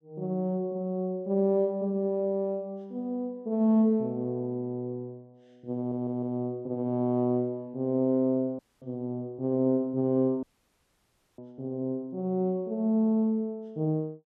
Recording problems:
stutter; at 6 s
audio cutting out; at 8.5 s and at 10 s for 1 s

